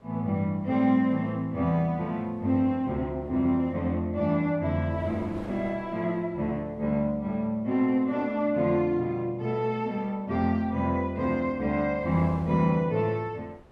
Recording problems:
wind on the microphone; below 740 Hz, SNR 24 dB

